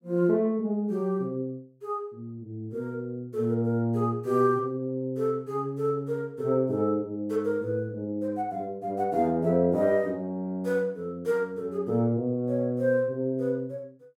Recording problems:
none

